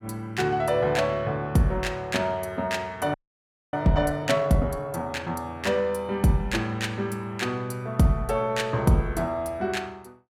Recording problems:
frozen audio; at 3 s for 0.5 s

